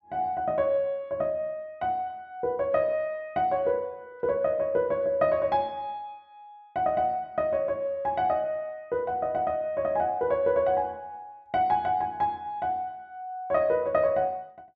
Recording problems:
none

